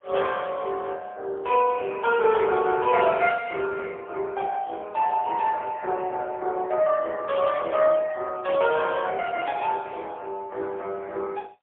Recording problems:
telephone audio; 340 Hz to 2.5 kHz, AMR-NB, then MP3

